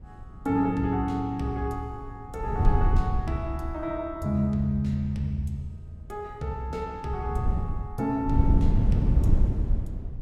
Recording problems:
wind on the microphone; below 110 Hz, SNR -2 dB

